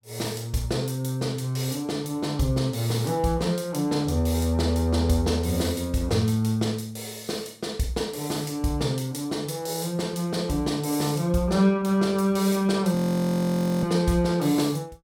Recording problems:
frozen audio; at 13 s for 1 s

